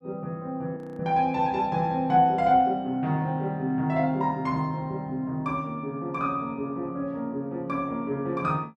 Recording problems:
frozen audio; at 1 s

